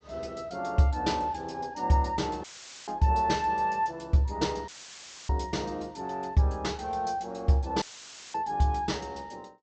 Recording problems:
treble cut off; nothing above 8 kHz
dropout; at 2.5 s, at 4.5 s for 0.5 s and at 8 s for 0.5 s; filled with static

